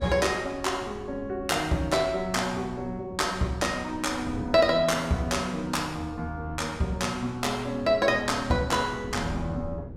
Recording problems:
wind noise; below 260 Hz, SNR 15 dB

